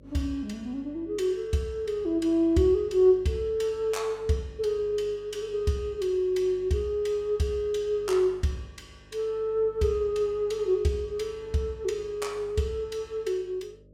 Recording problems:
electrical hum; 50 Hz, harmonics up to 600 Hz, SNR 24 dB

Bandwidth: 16.5 kHz